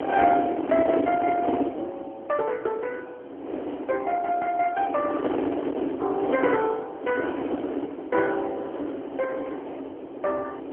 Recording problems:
phone line; 260 Hz to 3.1 kHz, AMR-NB
wind on the microphone; below 580 Hz, SNR 3 dB

